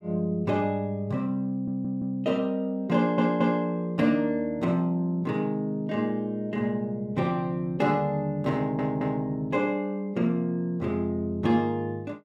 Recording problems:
audio stuttering; at 1.5 s, at 3 s and at 8.5 s

